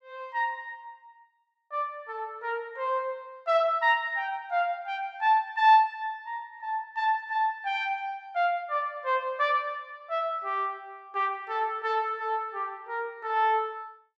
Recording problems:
none

